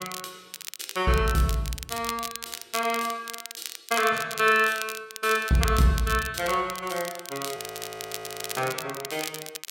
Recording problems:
crackling; vinyl, SNR 10 dB
frozen audio; at 7.5 s for 1 s

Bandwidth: 16 kHz